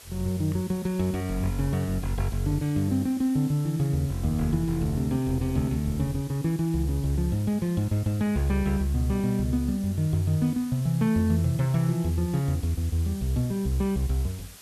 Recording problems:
hiss; slope 0 dB per octave, SNR 19 dB

